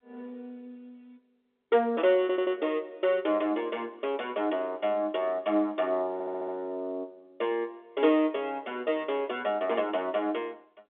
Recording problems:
telephone audio; 240 Hz to 3.6 kHz, G.711
audio stuttering; at 2 s and at 6 s

